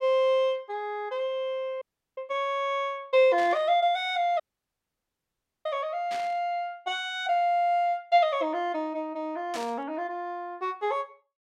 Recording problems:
dropout; at 2 s and at 4.5 s for 1.5 s
burst of static; at 3.5 s, at 6 s and at 9.5 s; peak -7 dB vs average level

